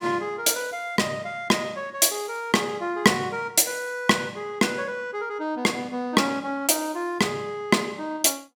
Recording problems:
none

